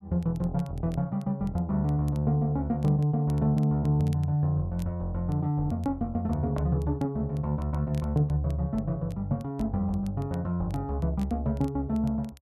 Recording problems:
crackle; vinyl, SNR 30 dB

